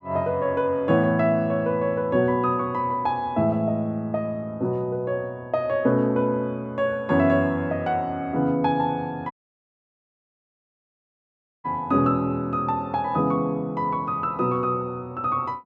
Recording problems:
dropout; at 9.5 s for 2.5 s

